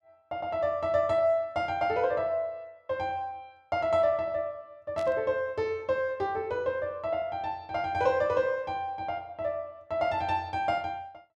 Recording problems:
static burst; at 5 s; peak -12 dB vs average level

